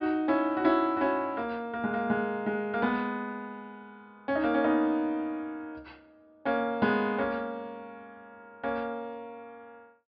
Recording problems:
treble missing; nothing above 5.5 kHz

